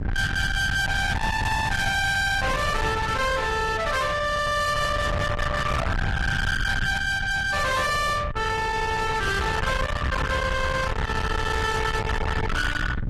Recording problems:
lossy codec; AAC, log-spectral distance 3 dB, nothing above 13.1 kHz
distortion; soft clipping, signal-to-distortion ratio 7 dB
wind on the microphone; below 1.7 kHz, SNR 3 dB

